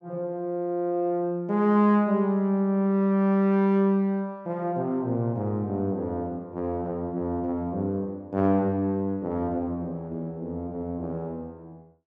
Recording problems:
none

